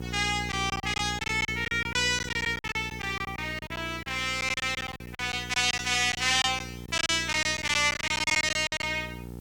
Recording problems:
electrical hum; 60 Hz, harmonics up to 960 Hz, SNR 13 dB
hiss; SNR 29 dB
lost packets; 15% of the sound replaced, filled with silence

